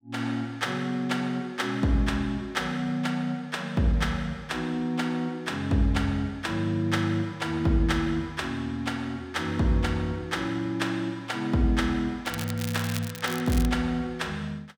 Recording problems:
crackling; from 12 to 14 s; loose cable, SNR 10 dB

